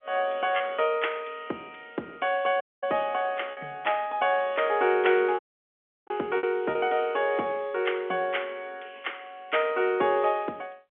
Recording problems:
telephone audio; 240 Hz to 3.4 kHz, G.711
packet loss; 3% of the sound replaced, filled with repeated pitch periods
audio cutting out; at 2.5 s and at 5.5 s for 0.5 s

